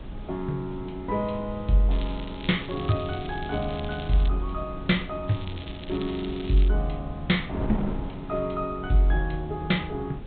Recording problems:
treble cut off; nothing above 4 kHz
hiss; SNR 27 dB
wind on the microphone; below 210 Hz, SNR 11 dB
crackling; from 2 to 4.5 s and from 5.5 to 6.5 s; loose cable, SNR 16 dB

